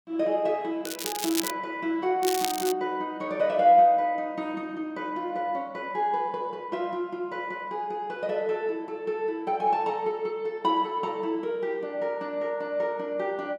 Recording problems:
crackle; at 1 s and at 2 s; loose cable, SNR 5 dB

